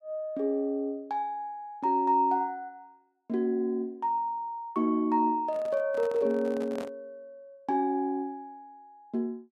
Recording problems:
microphone handling noise; from 5.5 to 7 s; peak -8 dB vs average level

